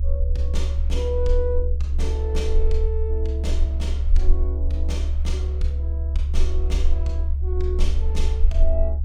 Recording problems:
low-frequency rumble; below 70 Hz, strongest tone 20 Hz, SNR -8 dB

